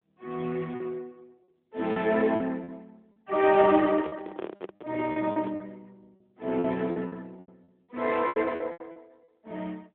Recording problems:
phone line; 190 Hz to 3.5 kHz, AMR-NB
lost packets; 10% of the sound replaced, filled with repeated pitch periods
handling noise; from 3.5 to 5.5 s; peak -5 dB vs average level

